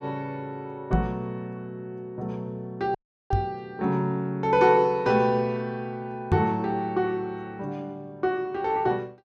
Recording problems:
microphone bump; at 1 s, at 3.5 s and at 6.5 s; peak +7 dB vs average level
audio cutting out; at 3 s

